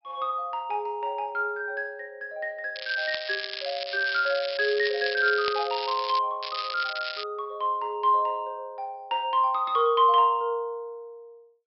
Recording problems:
treble missing; nothing above 5.4 kHz
crackle; from 3 to 6 s and at 6.5 s; loose cable, SNR 8 dB

